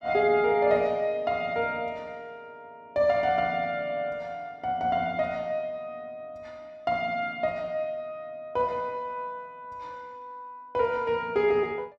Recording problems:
none

